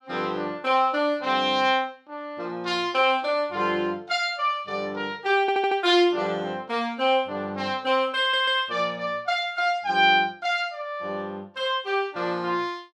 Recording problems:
stutter; at 5.5 s and at 8 s

